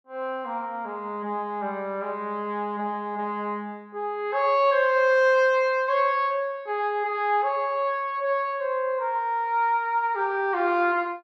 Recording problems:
none

